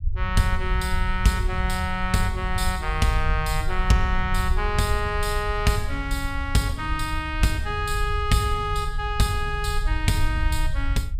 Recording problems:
rumble; below 68 Hz, SNR 4 dB

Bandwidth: 15 kHz